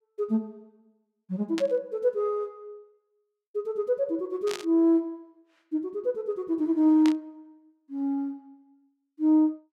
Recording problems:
burst of static; at 1.5 s, at 4.5 s and at 7 s; peak -5 dB vs average level

